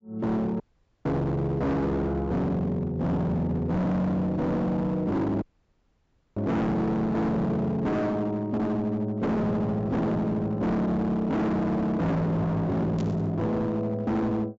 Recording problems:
low-pass filter; nothing above 8 kHz
distorted audio; hard clipping, signal-to-distortion ratio 6 dB
dropout; at 0.5 s and at 5.5 s for 1 s
static burst; at 13 s; peak -14 dB vs average level

